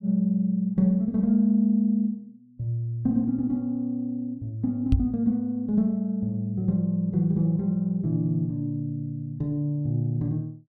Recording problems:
microphone thump; at 5 s; peak +6 dB vs average level

